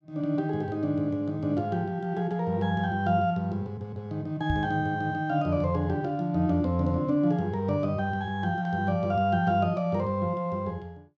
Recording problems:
microphone bump; at 4.5 s; peak +2 dB vs average level

